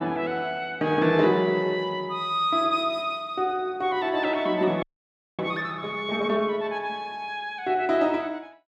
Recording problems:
frozen audio; at 5 s for 0.5 s

